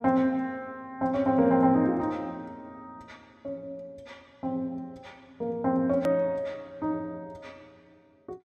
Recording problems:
edit click; at 6 s

